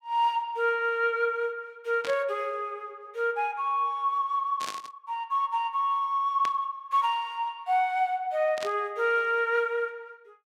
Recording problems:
static burst; 4 times, first at 2 s; peak -4 dB vs average level

